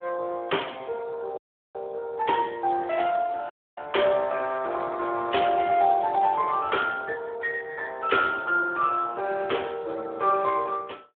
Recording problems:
phone line; 320 Hz to 3.3 kHz, Speex
audio cutting out; at 1.5 s and at 3.5 s

